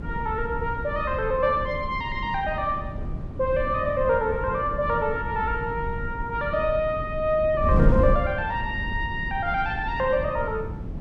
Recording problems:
wind noise; below 180 Hz, SNR 6 dB

